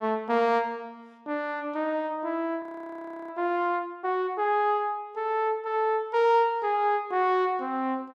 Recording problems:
frozen audio; at 2.5 s for 0.5 s

